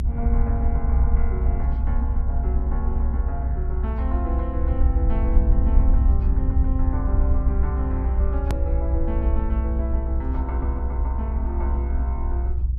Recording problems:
low-frequency rumble; below 64 Hz, SNR -9 dB
click at an edit; at 8.5 s

